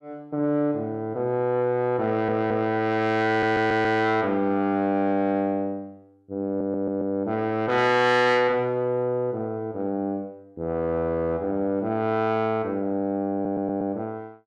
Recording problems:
distortion; soft clipping, signal-to-distortion ratio 11 dB
audio stuttering; 4 times, first at 2 s

